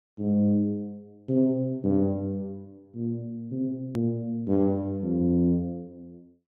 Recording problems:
edit click; at 4 s

